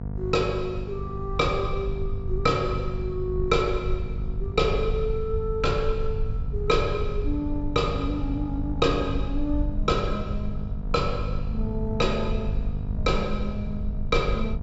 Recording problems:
treble missing; nothing above 8 kHz
mains hum; 50 Hz, harmonics up to 750 Hz, SNR 8 dB
rumble; below 72 Hz, SNR 5 dB

